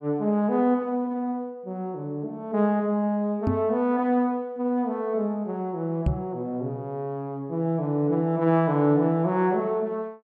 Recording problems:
knock on the microphone; at 3.5 s and at 6 s; peak +6 dB vs average level

